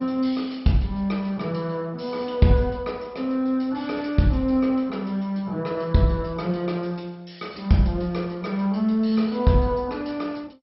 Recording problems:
codec artefacts; MP2, log-spectral distance 3 dB, nothing above 5.5 kHz

